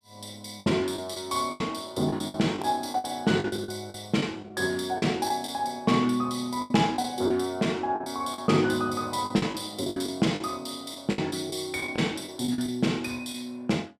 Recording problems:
lost packets; 11% of the sound replaced, filled with the last packet

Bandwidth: 14.5 kHz